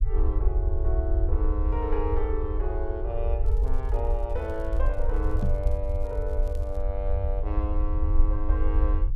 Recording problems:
low-frequency rumble; below 62 Hz, SNR -6 dB
crackling; from 3.5 to 7 s; loose cable, SNR 27 dB
knock on the microphone; at 5.5 s; peak +9 dB vs average level

